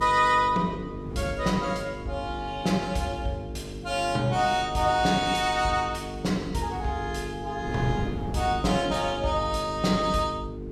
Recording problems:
hum; 50 Hz, harmonics up to 450 Hz, SNR 11 dB
wind on the microphone; below 260 Hz, SNR 15 dB

